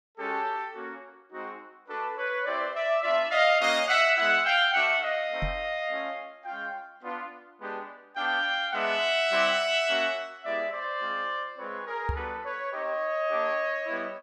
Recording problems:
microphone thump; at 5.5 s and at 12 s; peak -1 dB vs average level

